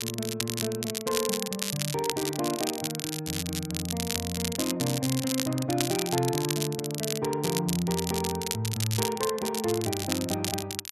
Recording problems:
crackle; vinyl, SNR 2 dB

